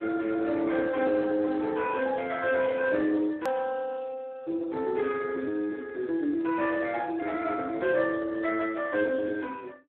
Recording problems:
phone line; 240 Hz to 2.5 kHz, Speex
edit click; at 3.5 s

